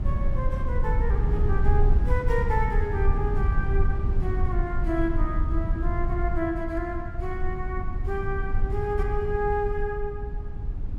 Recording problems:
low-frequency rumble; below 76 Hz, SNR -3 dB

